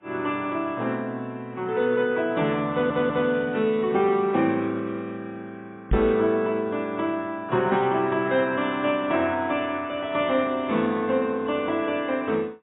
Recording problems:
lossy compression; AAC, log-spectral distance 2 dB, nothing above 3.6 kHz
stutter; at 2.5 s
microphone bump; at 6 s; peak +4 dB vs average level

